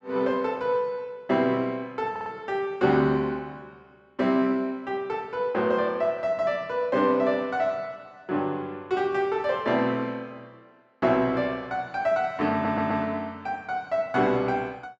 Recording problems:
stutter; at 2 s and at 13 s

